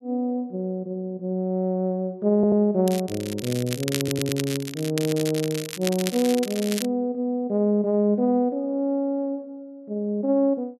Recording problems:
stutter; at 2.5 s and at 4 s
crackling; from 3 to 7 s; loose cable, SNR 9 dB

